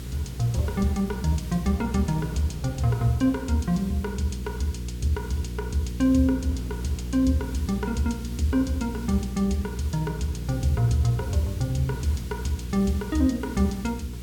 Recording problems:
electrical hum; 60 Hz, harmonics up to 480 Hz, SNR 9 dB
background hiss; SNR 19 dB
wind on the microphone; below 690 Hz, SNR 28 dB

